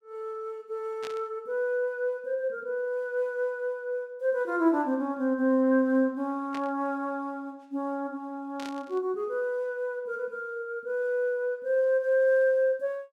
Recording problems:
burst of static; at 1 s, at 6.5 s and at 8.5 s; peak -8 dB vs average level

